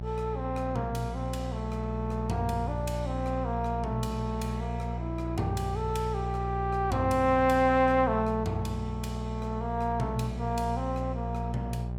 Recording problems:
hum; 60 Hz, harmonics up to 780 Hz, SNR 4 dB

